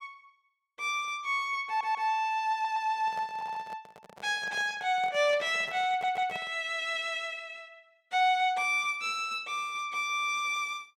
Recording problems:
stutter; 4 times, first at 1.5 s
handling noise; from 3 to 6.5 s; peak -10 dB vs average level

